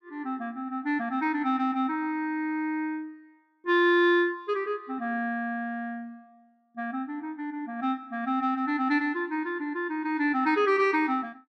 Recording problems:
none

